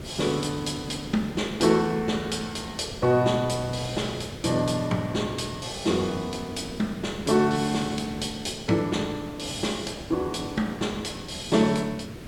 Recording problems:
hiss; SNR 13 dB

